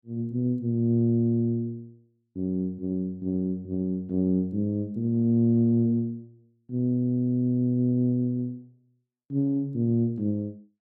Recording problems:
none

